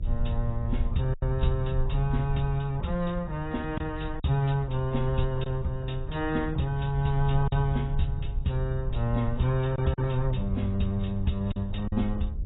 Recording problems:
lossy codec; AAC, log-spectral distance 2 dB, nothing above 3.8 kHz
hum; 60 Hz, harmonics up to 600 Hz, SNR 26 dB
rumble; below 72 Hz, SNR 6 dB
lost packets; 3% of the sound replaced, filled with silence

